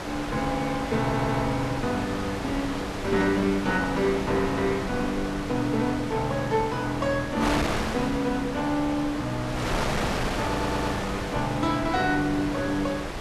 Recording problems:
wind on the microphone; below 1.8 kHz, SNR 5 dB
audio stuttering; at 1 s and at 10 s

